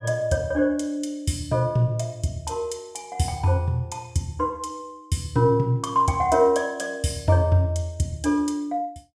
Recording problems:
none

